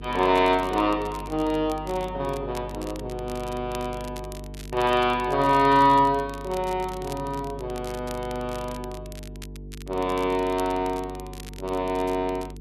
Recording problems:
electrical hum; 50 Hz, harmonics up to 450 Hz, SNR 15 dB
crackling; vinyl, SNR 21 dB

